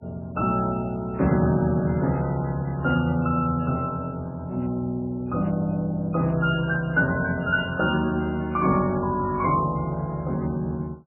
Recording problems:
codec artefacts; MP3, log-spectral distance 2 dB, nothing above 2.4 kHz

